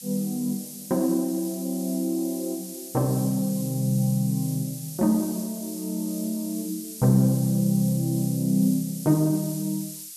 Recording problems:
hiss; SNR 12 dB

